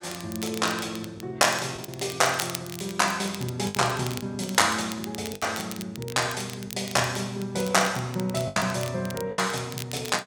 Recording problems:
crackling; vinyl, SNR 13 dB
lost packets; 5% of the sound replaced, filled with the last packet

